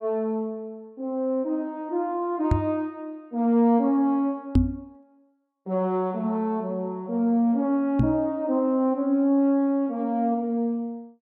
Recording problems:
microphone bump; at 2.5 s, at 4.5 s and at 8 s; peak +8 dB vs average level

